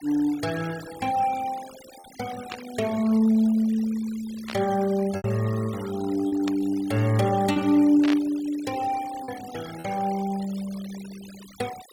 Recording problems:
noise reduction artefacts; signal-to-artefact ratio 19 dB
packet loss; 2% of the sound replaced, filled with repeated pitch periods
static burst; 4 times, first at 2.5 s; peak -4 dB vs average level

